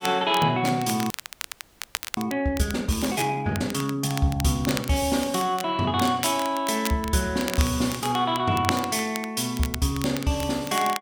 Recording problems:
crackling; vinyl, SNR 11 dB
audio freezing; at 1 s for 1 s

